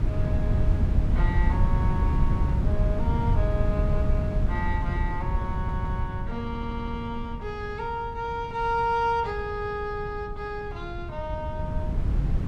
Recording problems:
wind noise; below 120 Hz, SNR -4 dB
stutter; at 5.5 s and at 6.5 s

